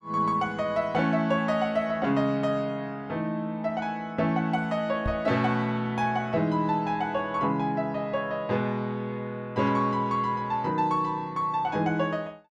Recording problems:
microphone bump; at 5 s; peak -1 dB vs average level

